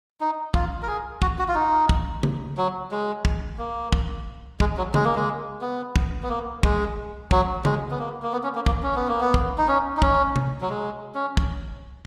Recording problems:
codec artefacts; Opus, log-spectral distance 2 dB

